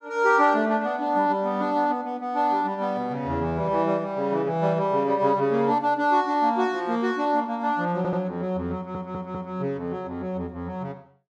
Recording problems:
audio stuttering; at 8 s and at 9 s

